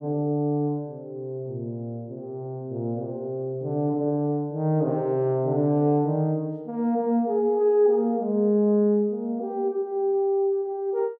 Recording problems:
none

